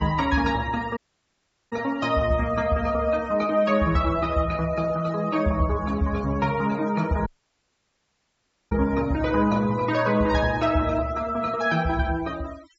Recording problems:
treble missing; nothing above 7.6 kHz
denoising artefacts; signal-to-artefact ratio 20 dB
audio cutting out; at 1 s for 0.5 s and at 7.5 s for 1.5 s

